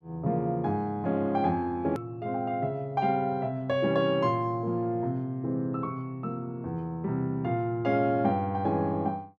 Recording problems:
click at an edit; at 2 s

